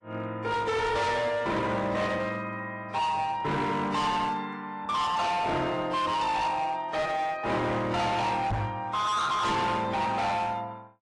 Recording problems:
codec artefacts; AAC, log-spectral distance 3 dB, nothing above 10.4 kHz
distorted audio; hard clipping, uneven, signal-to-distortion ratio 7 dB
microphone thump; at 8.5 s; peak +2 dB vs average level

